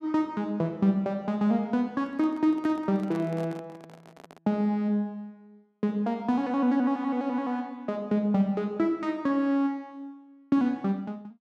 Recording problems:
microphone handling noise; from 2 to 4.5 s; peak -11 dB vs average level

